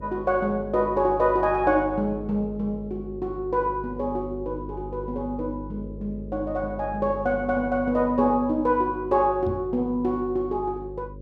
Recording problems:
hum; 50 Hz, harmonics up to 550 Hz, SNR 14 dB
microphone thump; at 9.5 s; peak -3 dB vs average level

